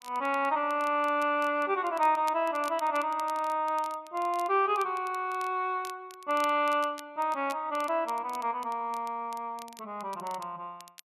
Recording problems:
crackling; vinyl, SNR 22 dB

